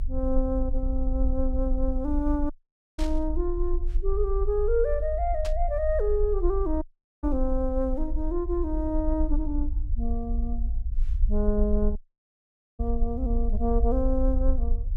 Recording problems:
low-frequency rumble; below 54 Hz, strongest tone 22 Hz, SNR 1 dB
audio cutting out; at 2.5 s, at 7 s and at 12 s for 1 s
static burst; at 3 s and at 5.5 s; peak -6 dB vs average level

